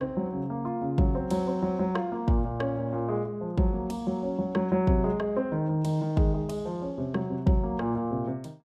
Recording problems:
none

